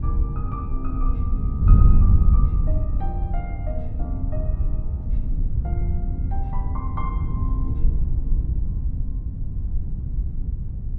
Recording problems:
wind on the microphone; below 84 Hz, SNR -13 dB

